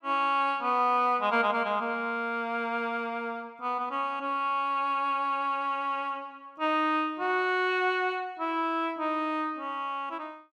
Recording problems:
none

